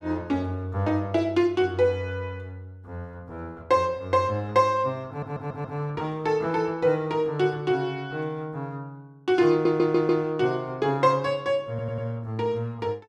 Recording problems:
audio stuttering; at 5 s, at 9.5 s and at 12 s

